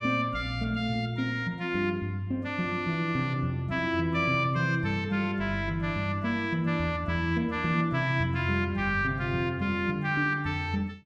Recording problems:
none

